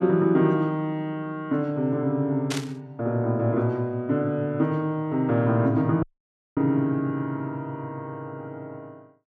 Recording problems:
burst of static; at 2.5 s; peak -1 dB vs average level
dropout; at 6 s for 0.5 s

